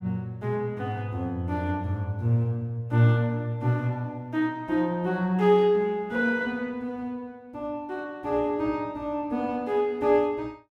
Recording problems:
none

